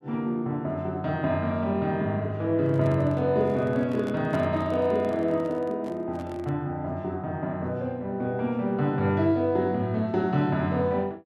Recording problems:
handling noise; from 2.5 to 6.5 s; peak -8 dB vs average level

